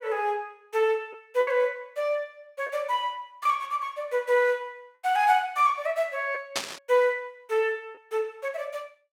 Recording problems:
lost packets; 1.6% of the sound replaced, filled with the last packet
burst of static; at 6.5 s; peak +4 dB vs average level

